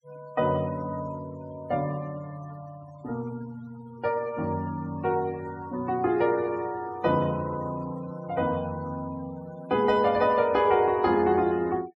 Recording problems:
noise reduction artefacts; signal-to-artefact ratio 23 dB

